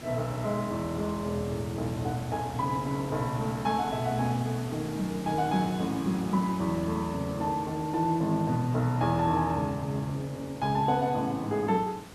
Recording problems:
hiss; slope -4 dB per octave, SNR 14 dB

